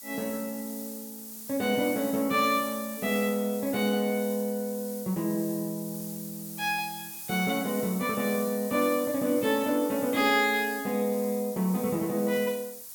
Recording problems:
background hiss; SNR 11 dB

